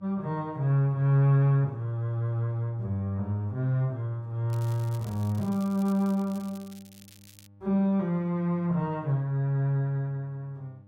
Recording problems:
electrical hum; 50 Hz, harmonics up to 800 Hz, SNR 28 dB
crackling; from 4.5 to 7.5 s; loose cable, SNR 24 dB

